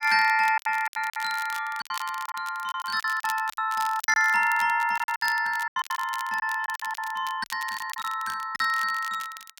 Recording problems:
crackling; vinyl, SNR 16 dB
lost packets; 14% of the sound replaced, filled with silence

